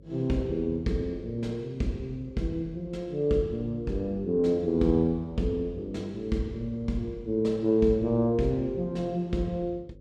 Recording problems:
electrical hum; 50 Hz, harmonics up to 550 Hz, SNR 24 dB

